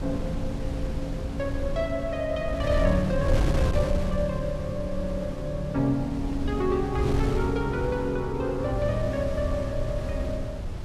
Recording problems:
wind on the microphone; below 130 Hz, SNR 3 dB

